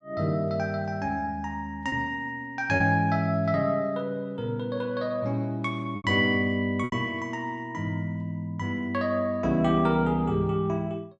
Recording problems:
lost packets; 2% of the sound replaced, filled with repeated pitch periods

